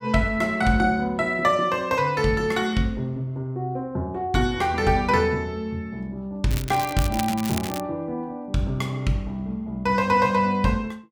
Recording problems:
crackling; from 6.5 to 8 s; loose cable, SNR 11 dB

